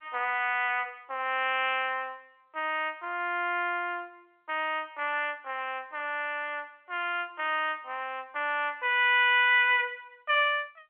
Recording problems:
telephone audio; 300 Hz to 3.4 kHz, G.711

